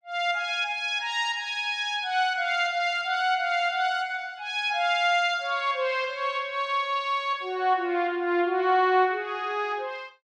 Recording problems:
none

